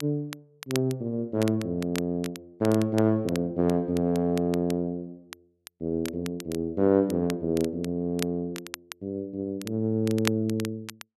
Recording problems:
crackle; vinyl, SNR 14 dB

